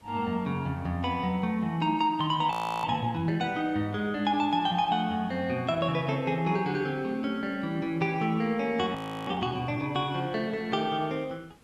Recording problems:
hiss; slope -4 dB per octave, SNR 29 dB
audio freezing; at 2.5 s and at 9 s

